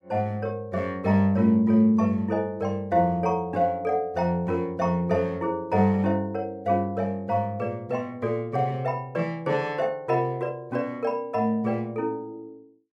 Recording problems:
none

